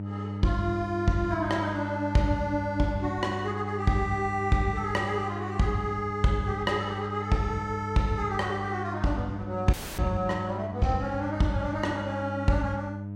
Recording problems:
electrical hum; 50 Hz, harmonics up to 600 Hz, SNR 7 dB
audio freezing; at 9.5 s

